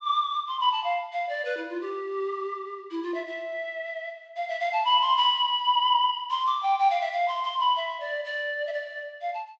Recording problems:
treble missing; nothing above 8 kHz

